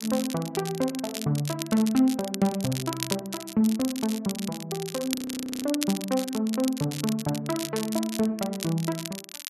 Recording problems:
crackle; vinyl, SNR 8 dB
audio freezing; at 5 s

